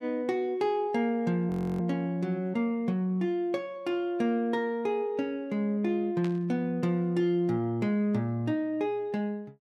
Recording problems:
audio freezing; at 1.5 s
static burst; at 6 s; peak -10 dB vs average level

